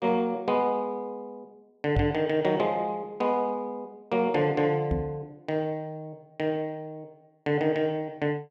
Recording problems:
microphone thump; at 2 s and at 5 s; peak +4 dB vs average level

